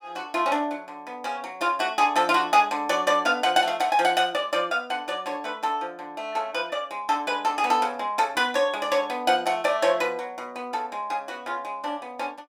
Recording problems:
none

